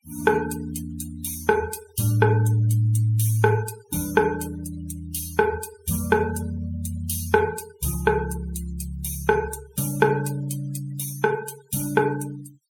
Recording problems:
denoising artefacts; signal-to-artefact ratio 17 dB

